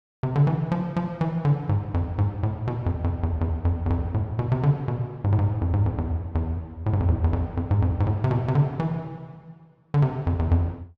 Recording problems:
none

